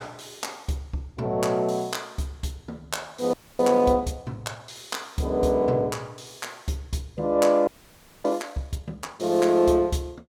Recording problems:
audio freezing; at 3.5 s and at 7.5 s for 0.5 s

